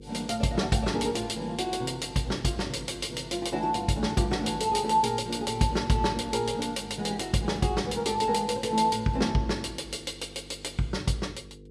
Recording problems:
hum; 50 Hz, harmonics up to 500 Hz, SNR 19 dB

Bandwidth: 13 kHz